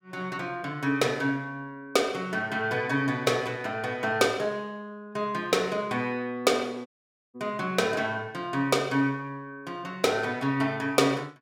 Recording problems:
audio cutting out; at 7 s

